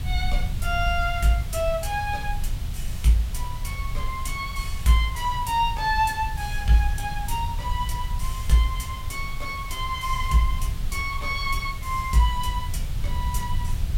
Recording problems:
background hiss; slope -2 dB per octave, SNR 17 dB
rumble; below 76 Hz, SNR 6 dB

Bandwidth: 16 kHz